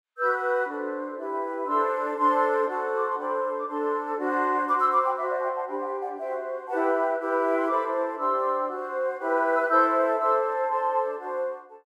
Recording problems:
none

